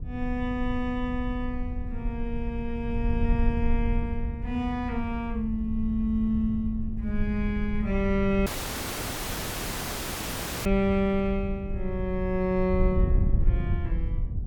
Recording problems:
wind on the microphone; below 82 Hz, SNR 3 dB
audio cutting out; at 8.5 s for 2 s

